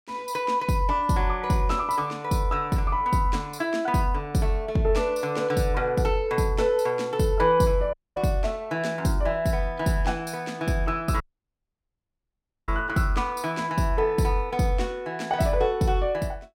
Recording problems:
dropout; at 8 s and at 11 s for 1.5 s

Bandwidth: 16.5 kHz